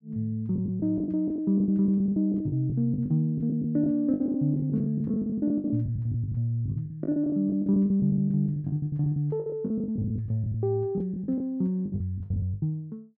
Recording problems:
lost packets; 20% of the sound replaced, filled with the last packet

